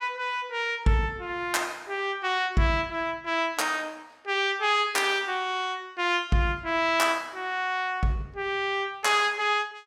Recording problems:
none

